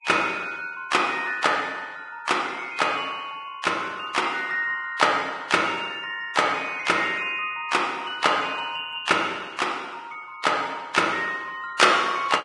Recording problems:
codec artefacts; Vorbis, log-spectral distance 3 dB, nothing above 10.1 kHz

